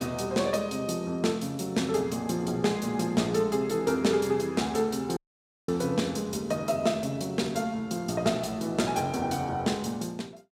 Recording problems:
audio cutting out; at 5 s for 0.5 s

